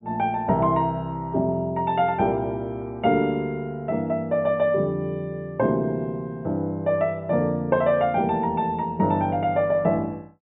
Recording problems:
low-pass filter; nothing above 4 kHz

